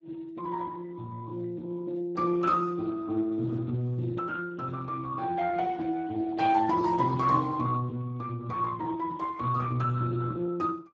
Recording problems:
lossy codec; Speex, log-spectral distance 3 dB, nothing above 7.3 kHz

